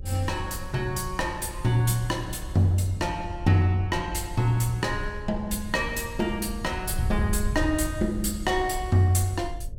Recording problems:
mains hum; 50 Hz, harmonics up to 600 Hz, SNR 26 dB
wind on the microphone; below 90 Hz, SNR 9 dB

